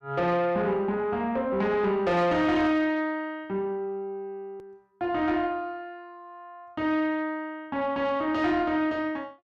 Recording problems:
distortion; soft clipping, signal-to-distortion ratio 12 dB
hard cut with a click; at 4.5 s

